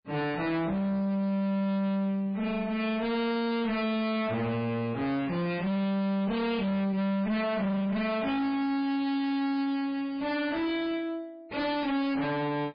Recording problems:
codec artefacts; MP3, log-spectral distance 2 dB, nothing above 4.1 kHz
distortion; soft clipping, signal-to-distortion ratio 6 dB

